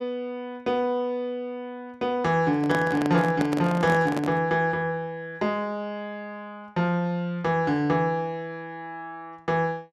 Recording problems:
handling noise; from 2.5 to 4.5 s; peak 0 dB vs average level

